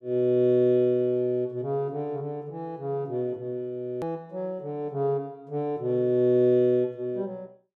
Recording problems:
hard cut with a click; at 4 s

